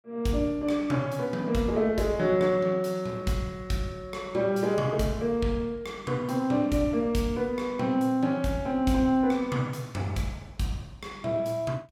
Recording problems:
none

